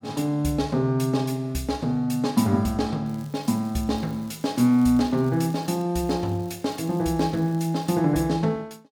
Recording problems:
crackle; from 3 to 6 s and from 6 to 8 s; loose cable, SNR 27 dB

